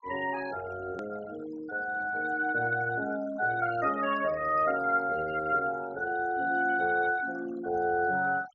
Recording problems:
treble missing; nothing above 8 kHz
noise reduction artefacts; signal-to-artefact ratio 18 dB
hard cut with a click; at 1 s

